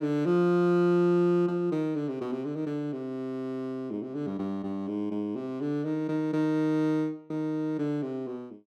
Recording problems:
none

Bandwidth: 14 kHz